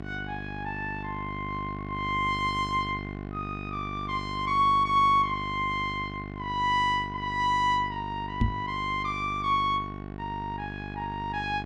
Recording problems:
electrical hum; 50 Hz, harmonics up to 1.9 kHz, SNR 10 dB
microphone bump; at 8.5 s; peak +6 dB vs average level

